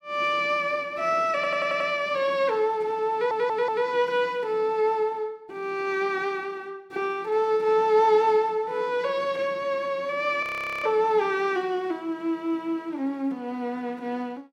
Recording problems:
audio stuttering; at 1.5 s and at 3 s
frozen audio; at 10 s

